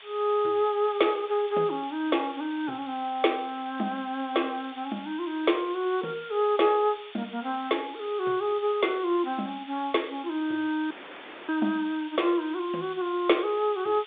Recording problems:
phone line; 240 Hz to 3.7 kHz, G.726
hiss; SNR 18 dB
dropout; at 11 s for 0.5 s

